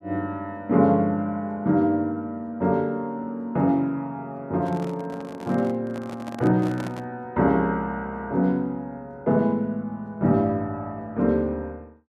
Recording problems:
handling noise; from 4.5 to 7 s; peak -6 dB vs average level

